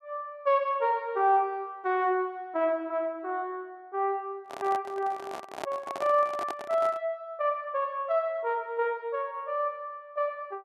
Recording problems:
microphone handling noise; from 4.5 to 7 s; peak -1 dB vs average level

